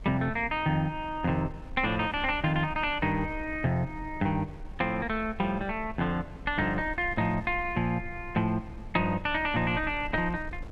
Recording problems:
wind on the microphone; below 80 Hz, SNR 15 dB

